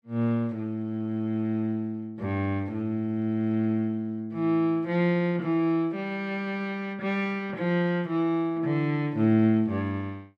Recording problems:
none

